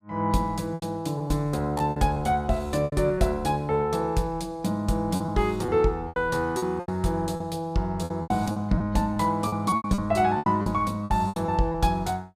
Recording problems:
packet loss; 12% of the sound replaced, filled with repeated pitch periods

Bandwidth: 15.5 kHz